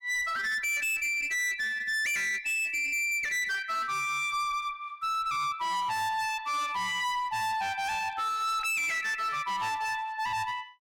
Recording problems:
distorted audio; hard clipping, uneven, signal-to-distortion ratio 7 dB

